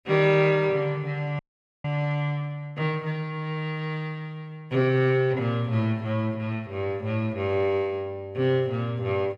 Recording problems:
frozen audio; at 1.5 s

